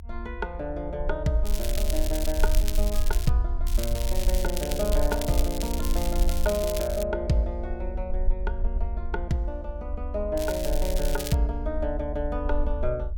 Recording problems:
rumble; below 50 Hz, SNR 1 dB
crackling; from 1.5 to 3.5 s, from 3.5 to 7 s and at 10 s; loose cable, SNR 6 dB

